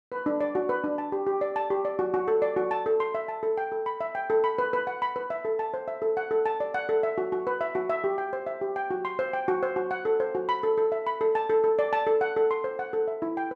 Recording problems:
none

